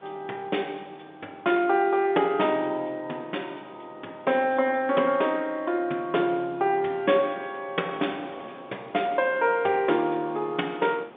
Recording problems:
phone line; 220 Hz to 3.6 kHz, G.711
wind on the microphone; below 1.2 kHz, SNR 23 dB

